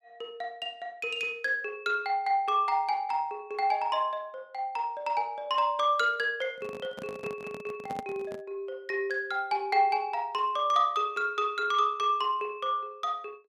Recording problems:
microphone handling noise; from 6.5 to 8.5 s; peak -6 dB vs average level

